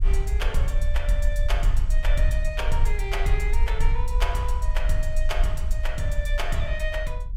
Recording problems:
rumble; below 44 Hz, strongest tone 22 Hz, SNR -4 dB

